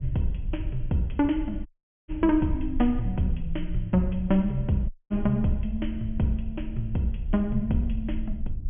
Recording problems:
treble cut off; nothing above 3.3 kHz
low-frequency rumble; below 58 Hz, SNR 8 dB
dropout; at 1.5 s and at 5 s

